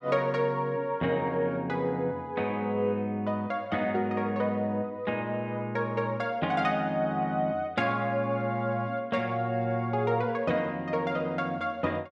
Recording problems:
none

